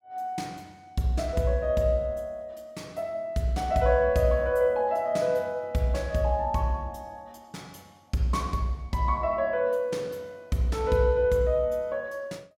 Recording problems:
none

